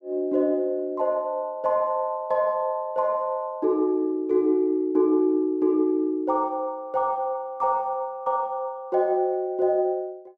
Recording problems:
none

